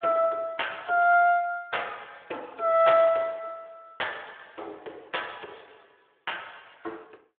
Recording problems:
telephone audio; 300 Hz to 3.5 kHz, Speex

